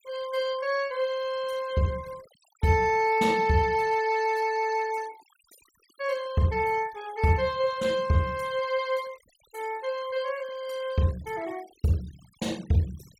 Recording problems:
noise reduction artefacts; signal-to-artefact ratio 22 dB

